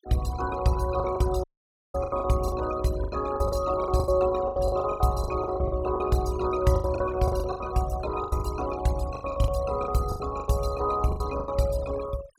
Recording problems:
denoising artefacts; signal-to-artefact ratio 16 dB
packet loss; 16% of the sound replaced, filled with the last packet
dropout; at 1.5 s for 0.5 s

